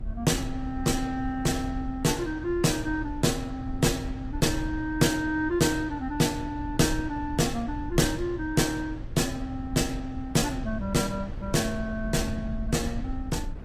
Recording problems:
lossy codec; AAC, log-spectral distance 2 dB, nothing above 14.7 kHz
low-frequency rumble; below 74 Hz, SNR 11 dB
wind on the microphone; below 490 Hz, SNR 21 dB

